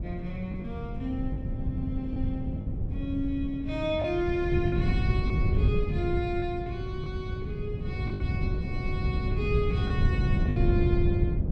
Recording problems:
wind on the microphone; below 150 Hz, SNR -3 dB
lost packets; 4% of the sound replaced, filled with the last packet

